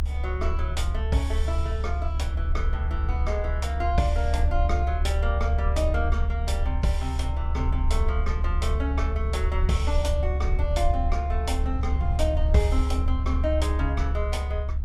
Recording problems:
low-frequency rumble; below 72 Hz, strongest tone 70 Hz, SNR -4 dB

